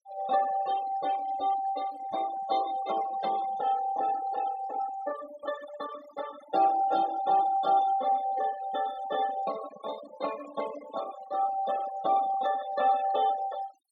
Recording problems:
noise reduction artefacts; signal-to-artefact ratio 14 dB

